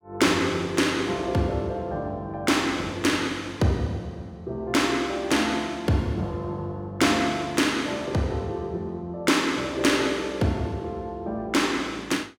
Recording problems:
none

